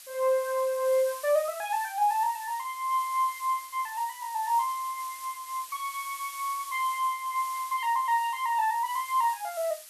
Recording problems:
hiss; slope +4 dB per octave, SNR 14 dB

